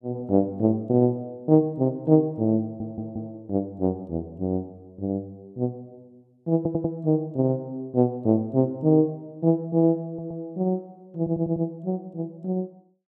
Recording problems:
audio stuttering; 4 times, first at 2.5 s

